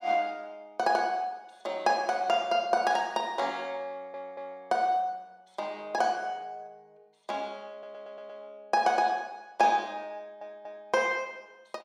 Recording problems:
stutter; at 4 s, at 7.5 s and at 10 s

